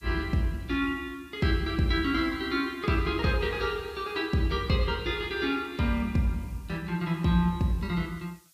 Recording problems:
hiss; slope +4 dB per octave, SNR 30 dB

